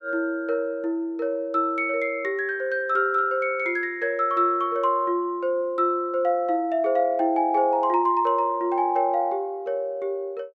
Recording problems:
none

